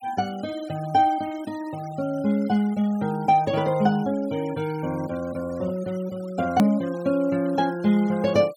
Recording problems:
noise reduction artefacts; signal-to-artefact ratio 22 dB
click at an edit; at 6.5 s

